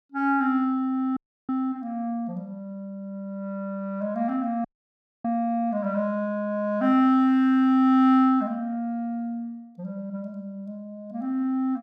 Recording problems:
dropout; at 1 s and at 4.5 s for 0.5 s

